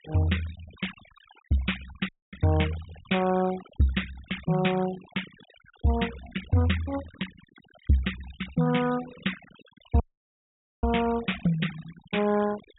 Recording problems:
low-pass filter; nothing above 4 kHz
noise reduction artefacts; signal-to-artefact ratio 16 dB
audio cutting out; at 2 s and at 10 s for 1 s

